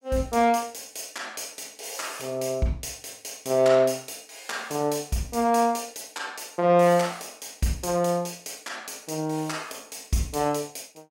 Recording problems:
none

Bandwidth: 16 kHz